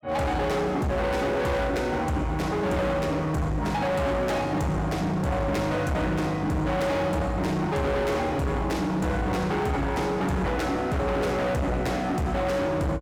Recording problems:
distorted audio; hard clipping, signal-to-distortion ratio 7 dB

